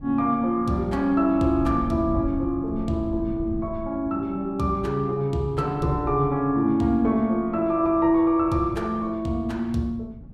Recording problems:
wind on the microphone; below 160 Hz, SNR 15 dB

